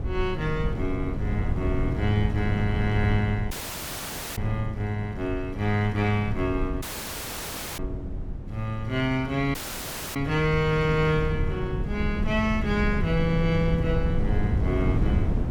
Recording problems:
wind on the microphone; below 150 Hz, SNR 3 dB
audio cutting out; at 3.5 s for 1 s, at 7 s for 1 s and at 9.5 s for 0.5 s

